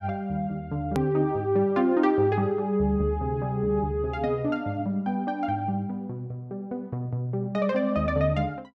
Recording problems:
edit click; at 1 s

